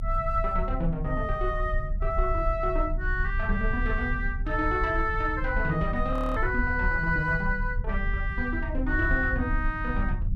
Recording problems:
rumble; below 66 Hz, strongest tone 34 Hz, SNR 4 dB
frozen audio; at 6 s

